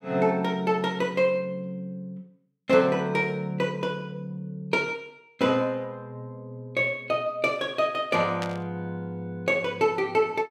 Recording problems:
static burst; at 8.5 s; peak -4 dB vs average level

